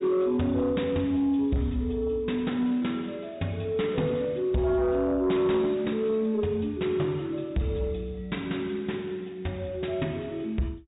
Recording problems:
low-pass filter; nothing above 4 kHz
distorted audio; soft clipping, signal-to-distortion ratio 12 dB

